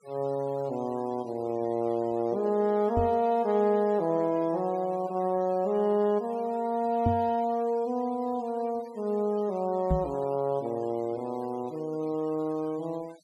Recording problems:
denoising artefacts; signal-to-artefact ratio 25 dB
knock on the microphone; at 3 s, at 7 s and at 10 s; peak +4 dB vs average level

